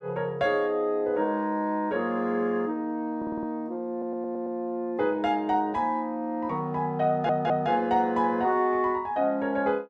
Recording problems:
audio stuttering; at 3 s, at 4 s and at 7 s

